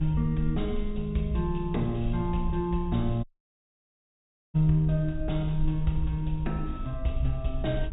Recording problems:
treble missing; nothing above 4 kHz
hum; 50 Hz, harmonics up to 450 Hz, SNR 27 dB
low-frequency rumble; below 58 Hz, strongest tone 22 Hz, SNR 8 dB
dropout; at 3 s for 1.5 s

